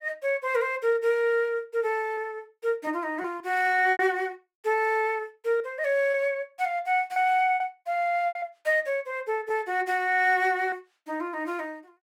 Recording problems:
packet loss; 4% of the sound replaced, filled with repeated pitch periods

